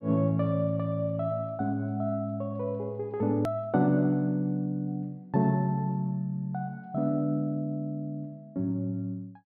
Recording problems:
low-pass filter; nothing above 5.5 kHz
edit click; at 3.5 s

